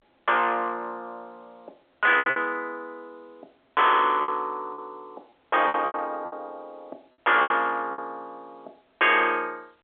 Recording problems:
phone line; 260 Hz to 3.6 kHz, G.711
distorted audio; soft clipping, signal-to-distortion ratio 5 dB
packet loss; 8% of the sound replaced, filled with repeated pitch periods

